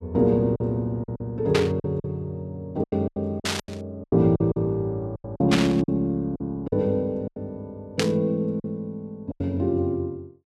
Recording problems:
packet loss; 11% of the sound replaced, filled with silence
static burst; 4 times, first at 1.5 s; peak +5 dB vs average level

